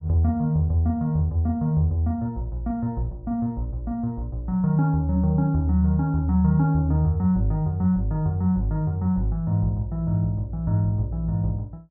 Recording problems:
none

